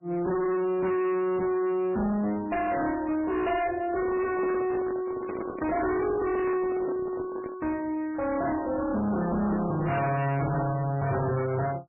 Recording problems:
lossy compression; MP3, log-spectral distance 3 dB, nothing above 2.6 kHz
distortion; hard clipping, uneven, signal-to-distortion ratio 6 dB
handling noise; from 4 to 7.5 s; peak -2 dB vs average level

